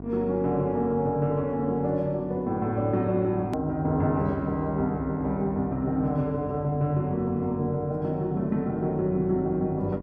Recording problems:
hum; 50 Hz, harmonics up to 1.1 kHz, SNR 16 dB
click at an edit; at 3.5 s

